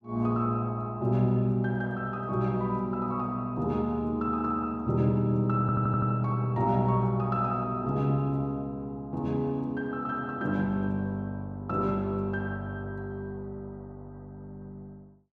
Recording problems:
stutter; at 5.5 s

